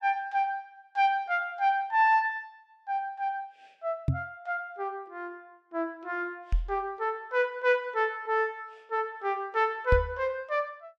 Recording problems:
knock on the microphone; at 4 s, at 6.5 s and at 10 s; peak +7 dB vs average level

